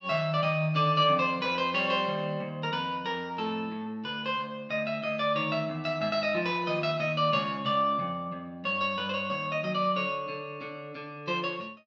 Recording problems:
low-pass filter; nothing above 7.8 kHz

